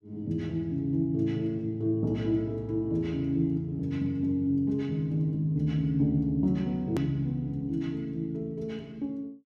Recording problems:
hard cut with a click; at 7 s

